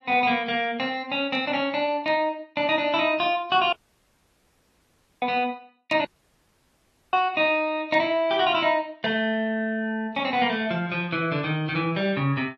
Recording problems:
lossy codec; AAC, log-spectral distance 2 dB
audio cutting out; at 3.5 s for 1.5 s and at 6 s for 1 s

